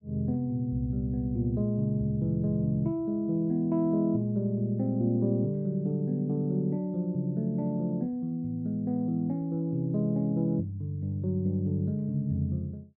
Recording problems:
none

